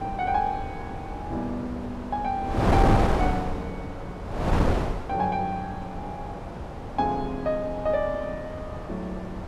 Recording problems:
wind noise; below 650 Hz, SNR 0 dB

